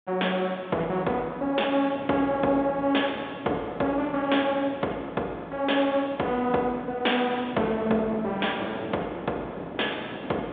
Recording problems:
telephone audio; 280 Hz to 3.6 kHz, G.726
wind noise; below 710 Hz, SNR 13 dB

